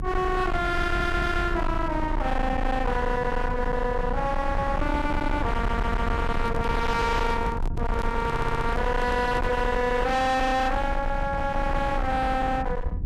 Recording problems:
distortion; hard clipping, uneven, signal-to-distortion ratio 6 dB
rumble; below 220 Hz, strongest tone 26 Hz, SNR 5 dB
stutter; at 1 s, at 5.5 s and at 8.5 s
microphone handling noise; from 5.5 to 9.5 s; peak -6 dB vs average level

